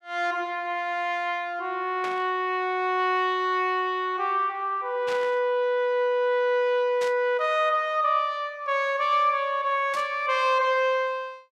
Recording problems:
static burst; 4 times, first at 2 s; peak -8 dB vs average level

